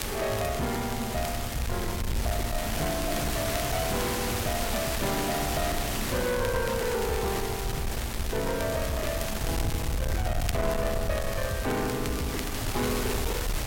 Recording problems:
distortion; soft clipping, signal-to-distortion ratio 11 dB
background hiss; slope -3 dB per octave, SNR 2 dB
rumble; below 94 Hz, SNR 5 dB
crackling; vinyl, SNR 12 dB

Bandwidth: 16.5 kHz